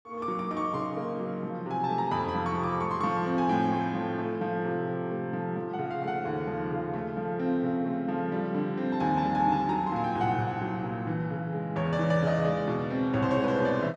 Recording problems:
none

